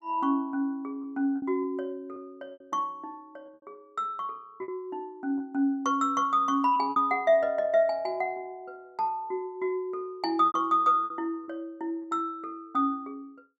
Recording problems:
lost packets; 5% of the sound replaced, filled with repeated pitch periods

